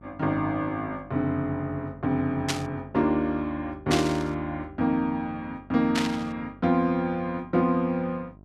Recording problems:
hum; 50 Hz, harmonics up to 1.1 kHz, SNR 23 dB
static burst; at 2.5 s, at 4 s and at 6 s; peak +4 dB vs average level

